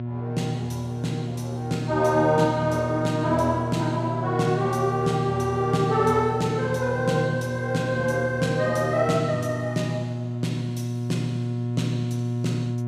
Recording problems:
electrical hum; 60 Hz, harmonics up to 720 Hz, SNR 4 dB

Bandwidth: 15 kHz